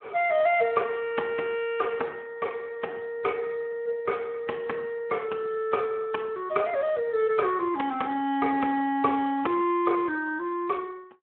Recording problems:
phone line; 300 Hz to 3.2 kHz, Speex

